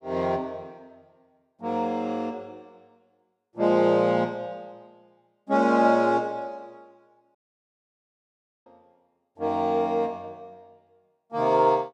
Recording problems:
audio cutting out; at 7.5 s for 1.5 s

